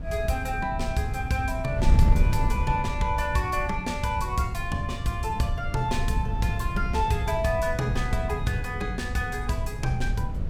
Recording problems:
wind noise; below 98 Hz, SNR 2 dB

